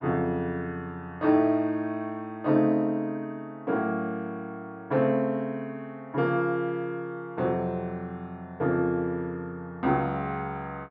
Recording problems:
none

